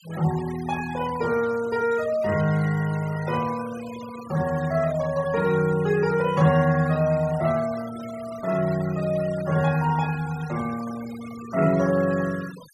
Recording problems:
noise reduction artefacts; signal-to-artefact ratio 17 dB

